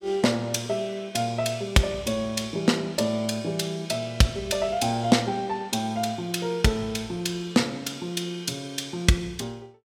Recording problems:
none

